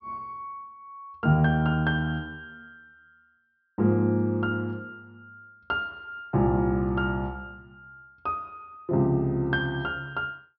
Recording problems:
treble missing; nothing above 5.6 kHz

